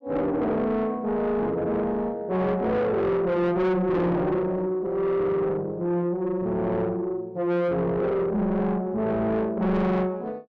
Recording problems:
distorted audio; soft clipping, signal-to-distortion ratio 7 dB

